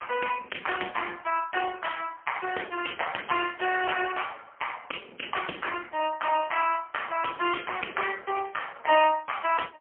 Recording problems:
phone line; 260 Hz to 3.2 kHz, AMR-NB, then MP3

